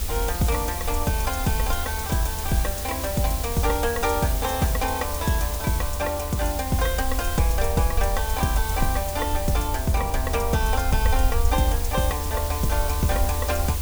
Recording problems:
hiss; slope -1 dB per octave, SNR 6 dB
low-frequency rumble; below 78 Hz, SNR 4 dB
wind on the microphone; below 340 Hz, SNR 19 dB

